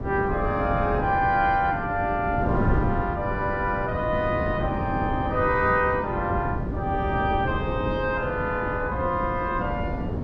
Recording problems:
wind noise; below 320 Hz, SNR 4 dB

